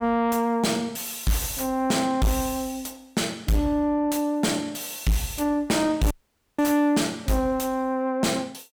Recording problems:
distorted audio; soft clipping, signal-to-distortion ratio 6 dB
audio cutting out; at 6 s

